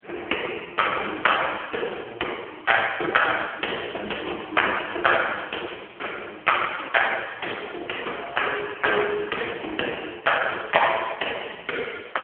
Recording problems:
phone line; 300 Hz to 3.3 kHz, AMR-NB

